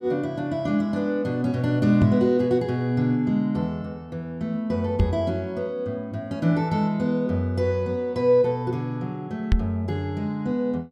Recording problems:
microphone bump; at 2 s, at 5 s and at 9.5 s; peak +7 dB vs average level

